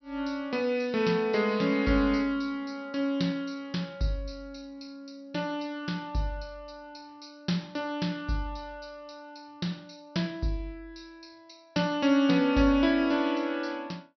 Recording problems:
low-pass filter; nothing above 5.9 kHz

